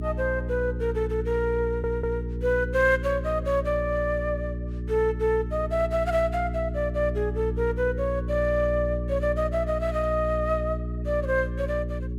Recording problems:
mains hum; 60 Hz, harmonics up to 420 Hz, SNR 5 dB
audio stuttering; at 1.5 s

